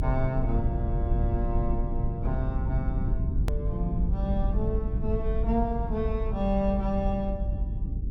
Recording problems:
rumble; below 94 Hz, SNR -2 dB
hard cut with a click; at 3.5 s

